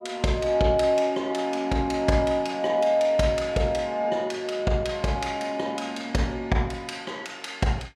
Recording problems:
none

